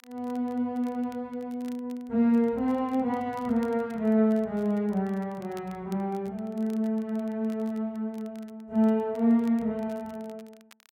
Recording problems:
crackle; vinyl, SNR 29 dB

